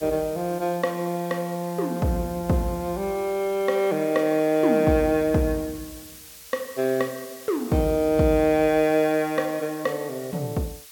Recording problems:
hiss; SNR 19 dB

